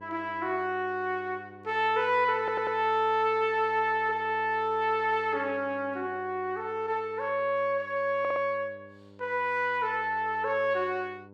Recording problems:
mains hum; 50 Hz, harmonics up to 1.1 kHz, SNR 23 dB
stutter; at 2.5 s and at 8 s

